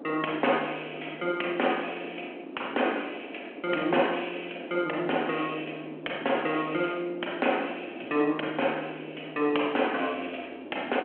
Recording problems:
phone line; 260 Hz to 3.2 kHz, G.726
wind noise; below 500 Hz, SNR 12 dB

